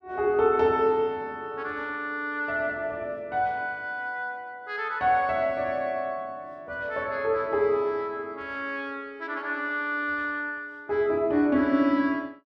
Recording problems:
none

